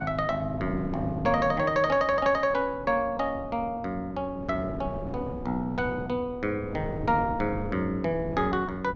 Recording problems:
wind on the microphone; below 340 Hz, SNR 11 dB

